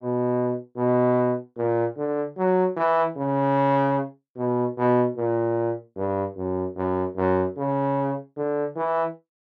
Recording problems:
none

